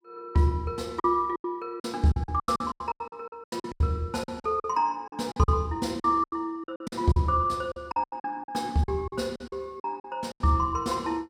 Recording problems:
lost packets; 17% of the sound replaced, filled with silence

